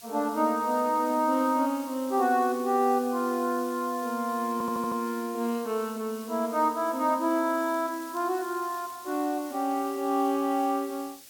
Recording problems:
background hiss; SNR 18 dB
stutter; at 4.5 s
crackling; from 7.5 to 9 s; loose cable, SNR 27 dB

